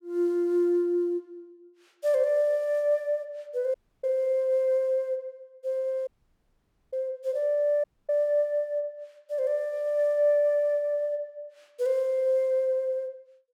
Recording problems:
audio cutting out; at 3.5 s, at 6 s for 1 s and at 8 s

